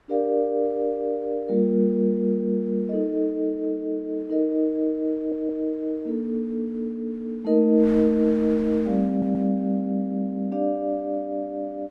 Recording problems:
wind on the microphone; below 1.4 kHz, SNR 25 dB
stutter; at 5 s and at 9 s

